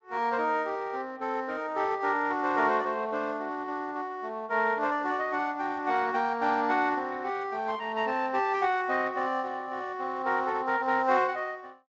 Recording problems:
lossy compression; Speex, log-spectral distance 3 dB

